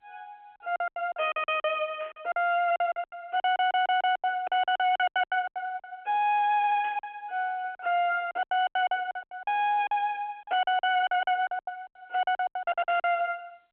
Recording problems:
telephone audio; 300 Hz to 3.3 kHz, G.711
distorted audio; hard clipping, signal-to-distortion ratio 11 dB
lost packets; 18% of the sound replaced, filled with silence
static burst; 4 times, first at 2 s; peak -16 dB vs average level
audio stuttering; at 3.5 s, at 6.5 s and at 13 s

